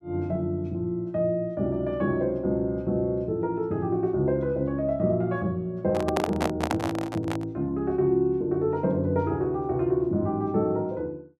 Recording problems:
microphone handling noise; from 6 to 7.5 s; peak +3 dB vs average level

